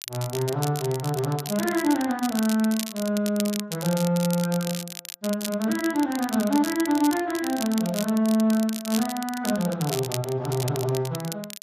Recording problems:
lossy compression; Speex, log-spectral distance 2 dB
crackling; vinyl, SNR 10 dB

